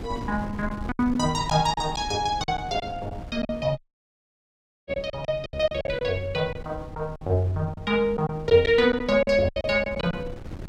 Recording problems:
wind noise; below 250 Hz, SNR 14 dB
lost packets; 9% of the sound replaced, filled with silence
audio cutting out; at 4 s for 1 s

